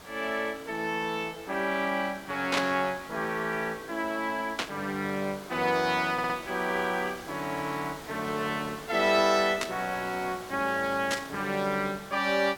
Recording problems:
hiss; slope -4 dB per octave, SNR 15 dB
static burst; 4 times, first at 2.5 s; peak +5 dB vs average level
stutter; at 6 s

